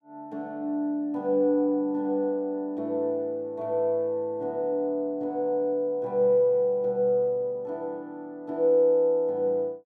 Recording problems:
none

